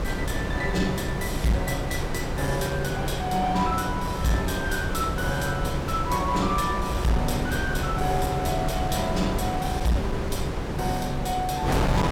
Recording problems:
distorted audio; hard clipping, uneven, signal-to-distortion ratio 11 dB
wind noise; below 530 Hz, SNR 2 dB

